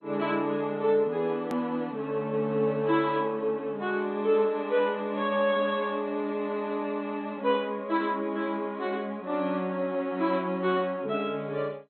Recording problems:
codec artefacts; MP2, log-spectral distance 2 dB, nothing above 13.1 kHz
edit click; at 1.5 s

